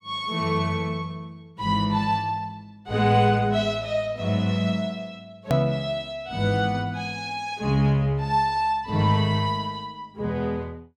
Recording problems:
hard cut with a click; at 5.5 s

